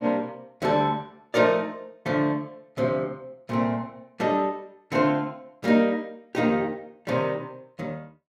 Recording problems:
none

